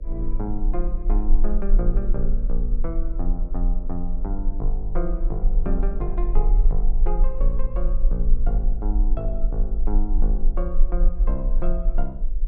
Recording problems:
hum; 50 Hz, harmonics up to 550 Hz, SNR 17 dB
low-frequency rumble; below 36 Hz, strongest tone 20 Hz, SNR -7 dB

